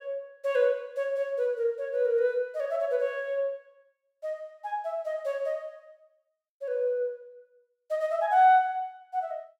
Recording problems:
none

